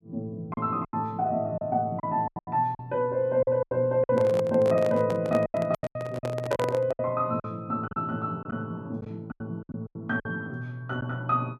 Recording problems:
packet loss; 12% of the sound replaced, filled with silence
handling noise; from 4 to 7 s; peak +3 dB vs average level

